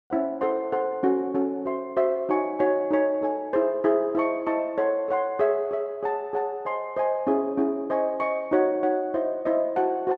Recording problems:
none

